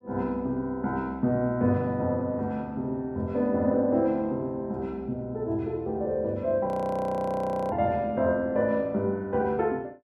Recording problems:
frozen audio; at 6.5 s for 1 s

